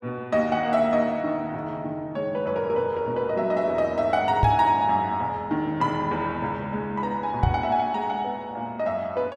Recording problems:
microphone bump; at 4.5 s and at 7.5 s; peak +6 dB vs average level

